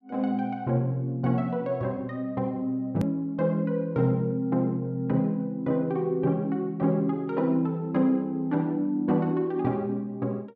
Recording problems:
edit click; at 3 s

